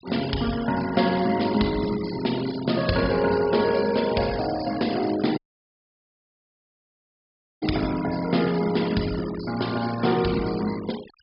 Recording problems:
treble cut off; nothing above 5.5 kHz
noise reduction artefacts; signal-to-artefact ratio 15 dB
dropout; at 5.5 s for 2 s

